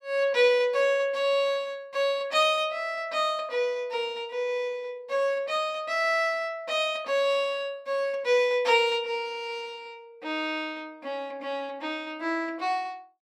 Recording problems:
none

